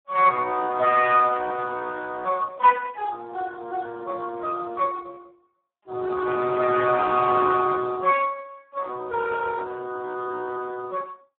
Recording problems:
phone line; 300 Hz to 3.7 kHz, Speex

